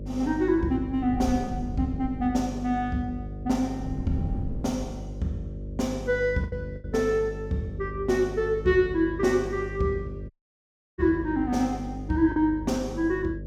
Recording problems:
electrical hum; 50 Hz, harmonics up to 600 Hz, SNR 11 dB
wind noise; below 160 Hz, SNR 13 dB
packet loss; 1.5% of the sound replaced, filled with the last packet
audio cutting out; at 10 s for 0.5 s

